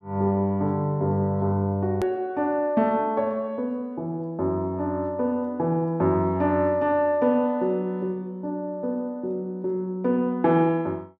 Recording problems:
click at an edit; at 2 s

